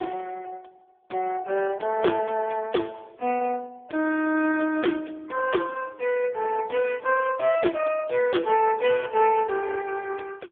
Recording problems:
phone line; 260 Hz to 3 kHz, AMR-NB

